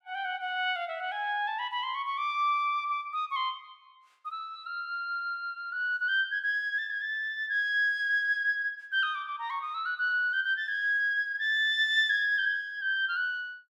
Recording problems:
none

